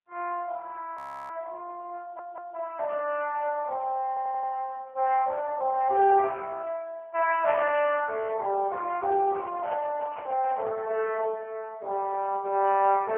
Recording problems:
phone line; 370 Hz to 3.2 kHz, AMR-NB, then MP3
audio freezing; at 1 s
stutter; at 2 s and at 4 s
handling noise; from 9.5 to 11 s; peak -7 dB vs average level

